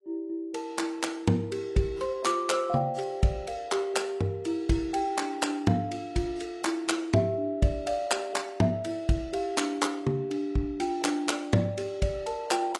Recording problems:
lossy compression; AAC, log-spectral distance 2 dB, nothing above 11 kHz

